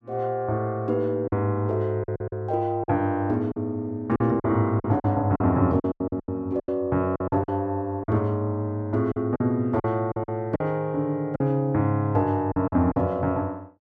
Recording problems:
lost packets; 10% of the sound replaced, filled with silence

